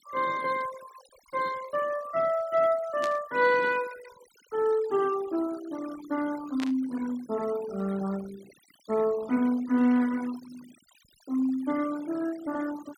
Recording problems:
denoising artefacts; signal-to-artefact ratio 18 dB
static burst; at 3 s and at 6.5 s; peak -5 dB vs average level

